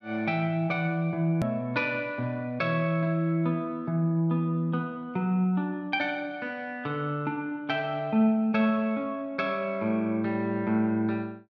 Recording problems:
click at an edit; at 1.5 s

